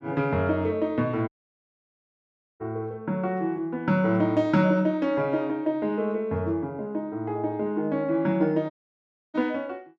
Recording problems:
audio cutting out; at 1.5 s for 1.5 s and at 8.5 s for 0.5 s

